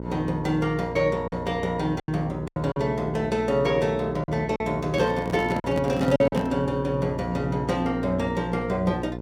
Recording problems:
mains hum; 60 Hz, harmonics up to 1.1 kHz, SNR 9 dB
lost packets; 5% of the sound replaced, filled with silence
microphone handling noise; from 5 to 6.5 s; peak +2 dB vs average level

